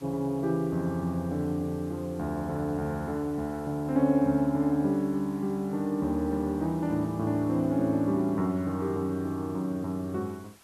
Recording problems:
hiss; slope -2 dB per octave, SNR 26 dB

